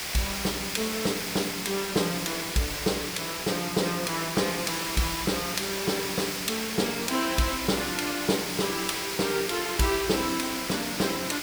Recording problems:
background hiss; slope 0 dB per octave, SNR 2 dB

